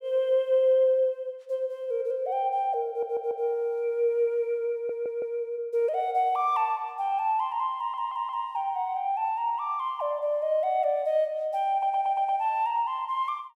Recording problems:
stutter; 4 times, first at 3 s

